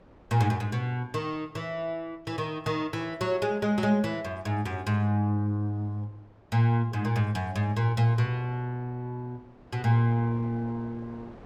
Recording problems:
wind noise; below 700 Hz, SNR 26 dB

